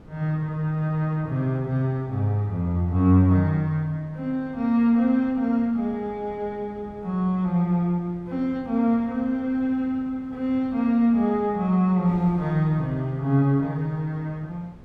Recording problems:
wind on the microphone; below 350 Hz, SNR 23 dB

